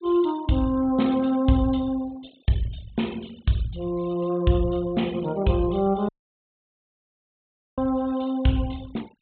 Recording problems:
treble missing; nothing above 4 kHz
denoising artefacts; signal-to-artefact ratio 23 dB
audio cutting out; at 6 s for 1.5 s

